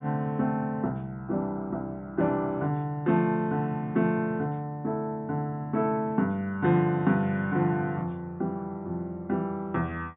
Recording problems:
low-pass filter; nothing above 4 kHz

